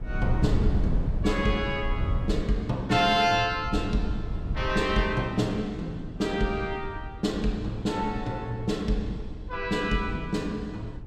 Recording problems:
wind on the microphone; below 110 Hz, SNR 6 dB

